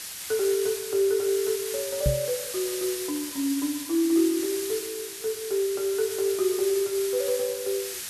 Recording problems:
background hiss; slope +3 dB per octave, SNR 6 dB
knock on the microphone; at 2 s; peak +5 dB vs average level

